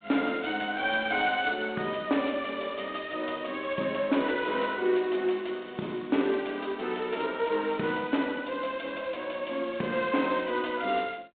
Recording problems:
telephone audio; 190 Hz to 3.7 kHz, G.726

